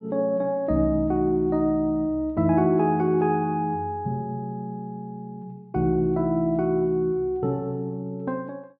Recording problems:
none

